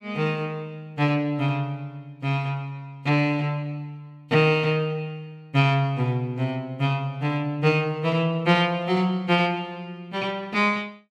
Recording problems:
none

